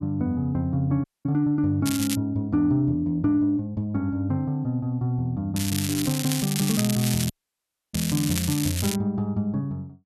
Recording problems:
audio cutting out; at 1 s and at 7.5 s for 0.5 s
crackle; at 2 s and from 5.5 to 9 s; loose cable, SNR 5 dB

